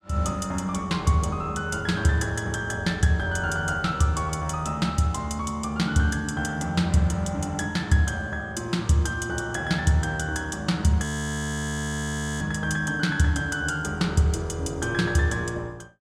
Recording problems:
frozen audio; at 11 s for 1.5 s

